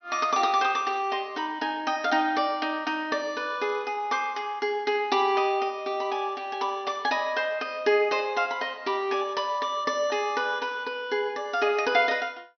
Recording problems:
treble missing; nothing above 6 kHz

